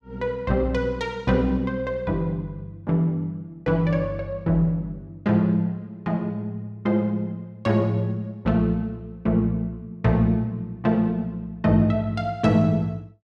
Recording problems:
none

